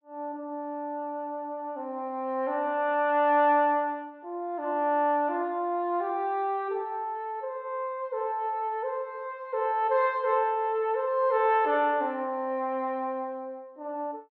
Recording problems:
none

